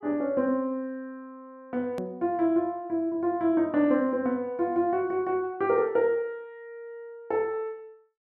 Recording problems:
edit click; at 2 s

